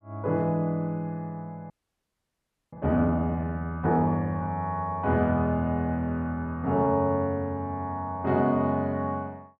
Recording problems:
audio freezing; at 1.5 s for 1 s

